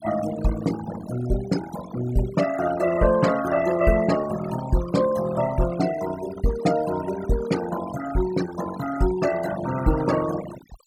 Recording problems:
noise reduction artefacts; signal-to-artefact ratio 11 dB

